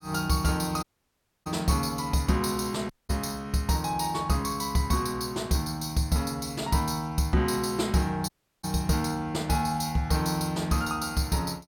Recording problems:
audio cutting out; at 1 s for 0.5 s, at 3 s and at 8.5 s

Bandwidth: 17 kHz